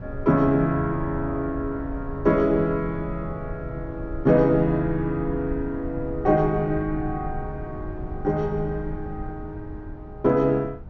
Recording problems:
treble cut off; nothing above 6.7 kHz
rumble; below 120 Hz, SNR 12 dB

